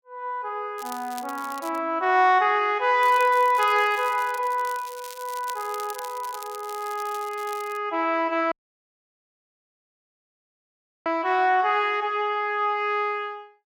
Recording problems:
crackle; from 1 to 2 s and from 3 to 8 s; loose cable, SNR 18 dB
dropout; at 8.5 s for 2.5 s

